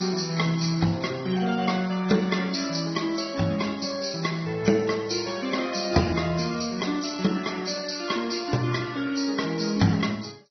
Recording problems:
lossy compression; Vorbis, then MP2, log-spectral distance 5 dB, nothing above 6 kHz

